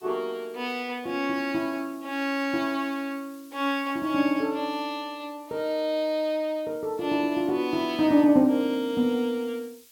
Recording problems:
background hiss; SNR 27 dB

